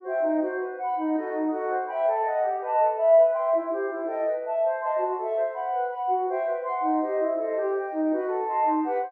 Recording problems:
none

